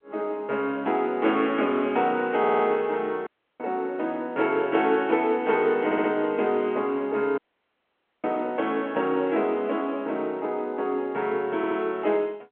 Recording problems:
phone line; 240 Hz to 3.4 kHz, G.711
stutter; at 2.5 s, at 6 s and at 12 s
audio cutting out; at 3.5 s and at 7.5 s for 1 s

